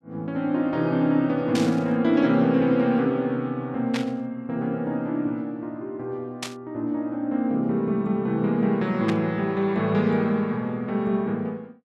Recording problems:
burst of static; 4 times, first at 1.5 s; peak -2 dB vs average level

